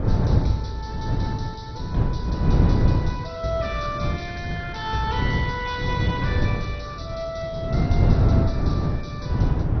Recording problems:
codec artefacts; MP2, log-spectral distance 4 dB, nothing above 6 kHz
wind noise; below 180 Hz, SNR -6 dB

